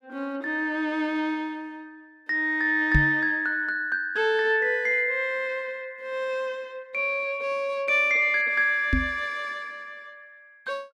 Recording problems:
knock on the microphone; at 3 s and at 9 s; peak +5 dB vs average level

